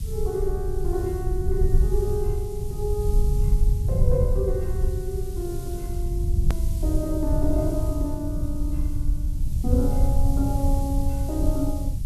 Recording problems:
electrical hum; 60 Hz, harmonics up to 660 Hz, SNR 21 dB
hiss; SNR 16 dB
rumble; below 80 Hz, SNR -4 dB
edit click; at 6.5 s

